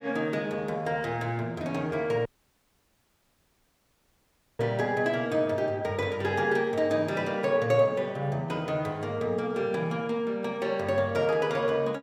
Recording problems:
dropout; at 2.5 s for 2.5 s

